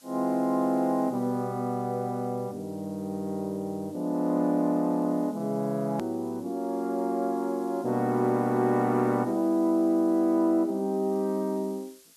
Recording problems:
hiss; slope +2 dB per octave, SNR 27 dB
hard cut with a click; at 6 s

